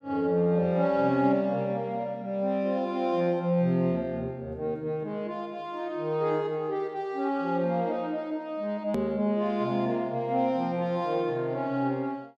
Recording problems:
hard cut with a click; at 9 s

